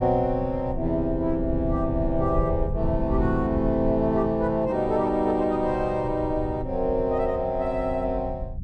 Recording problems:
low-frequency rumble; below 110 Hz, SNR 9 dB

